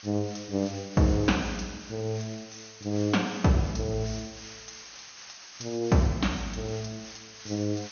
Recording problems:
treble missing; nothing above 6.5 kHz
hiss; slope +3 dB per octave, SNR 15 dB

